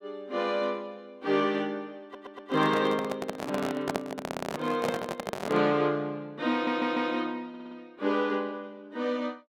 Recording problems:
audio stuttering; 4 times, first at 2 s
handling noise; from 2 to 5.5 s; peak +3 dB vs average level

